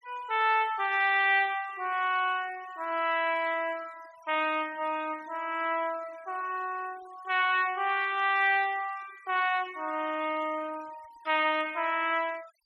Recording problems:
noise reduction artefacts; signal-to-artefact ratio 22 dB

